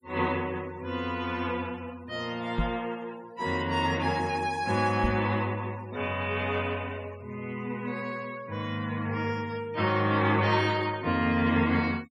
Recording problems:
denoising artefacts; signal-to-artefact ratio 24 dB
knock on the microphone; at 2.5 s and at 5 s; peak +4 dB vs average level

